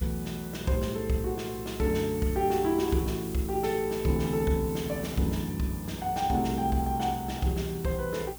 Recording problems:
hum; 60 Hz, harmonics up to 300 Hz, SNR 19 dB
background hiss; slope -1 dB per octave, SNR 14 dB

